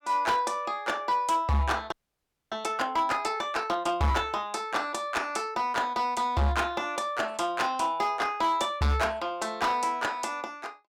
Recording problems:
distorted audio; hard clipping, signal-to-distortion ratio 8 dB
audio freezing; at 2 s for 0.5 s

